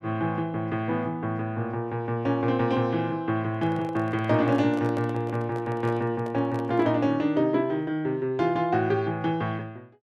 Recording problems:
microphone handling noise; from 3.5 to 7 s; peak -8 dB vs average level

